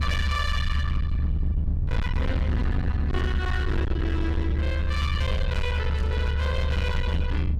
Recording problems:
distortion; hard clipping, signal-to-distortion ratio 7 dB
rumble; below 84 Hz, strongest tone 72 Hz, SNR -4 dB
static burst; at 6 s; peak -13 dB vs average level

